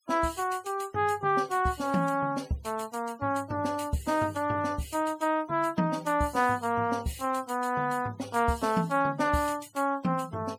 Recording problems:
noise reduction artefacts; signal-to-artefact ratio 24 dB

